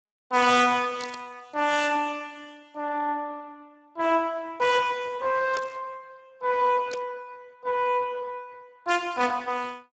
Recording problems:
lossy codec; Speex, log-spectral distance 4 dB, nothing above 7.8 kHz
burst of static; at 1 s, at 5.5 s and at 7 s; peak -6 dB vs average level

